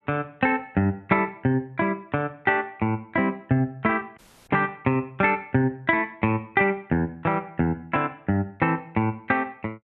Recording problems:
audio cutting out; at 4 s

